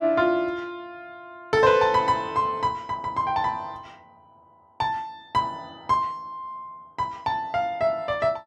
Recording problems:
none

